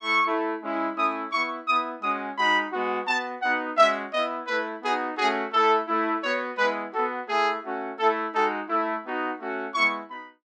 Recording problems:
none

